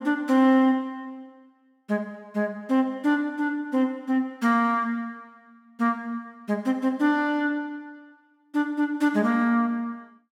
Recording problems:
none

